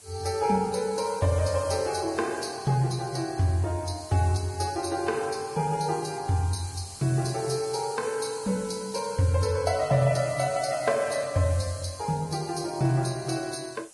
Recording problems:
lossy compression; Vorbis, log-spectral distance 9 dB, nothing above 11.3 kHz
hiss; SNR 17 dB

